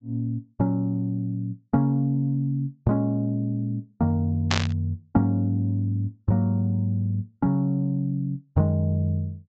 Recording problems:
treble missing; nothing above 8 kHz
static burst; at 4.5 s; peak +5 dB vs average level

